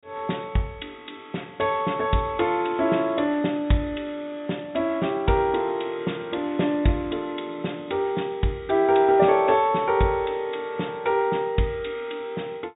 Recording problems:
treble cut off; nothing above 4 kHz

